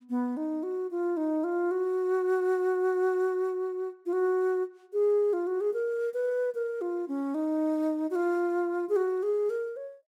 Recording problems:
none

